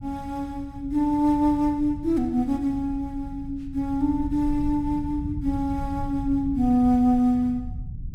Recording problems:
rumble; below 110 Hz, SNR 12 dB

